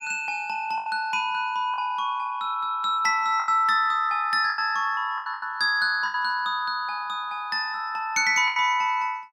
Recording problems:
lost packets; 6% of the sound replaced, filled with the last packet

